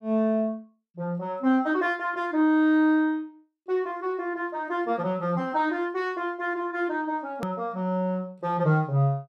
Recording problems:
edit click; at 7.5 s

